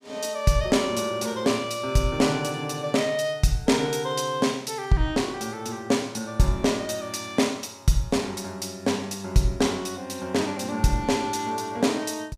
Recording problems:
none

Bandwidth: 15.5 kHz